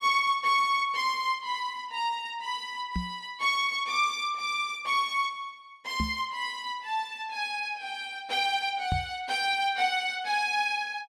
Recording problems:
knock on the microphone; at 3 s, at 6 s and at 9 s; peak +2 dB vs average level

